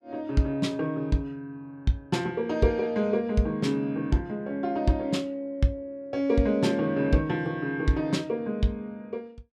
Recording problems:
none

